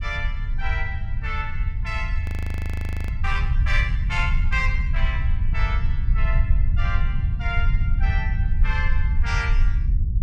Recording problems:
low-frequency rumble; below 76 Hz, SNR -6 dB
audio freezing; at 2 s for 1 s

